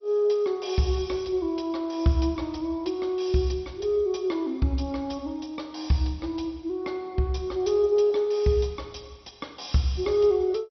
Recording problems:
lossy codec; MP2, log-spectral distance 4 dB, nothing above 5.8 kHz

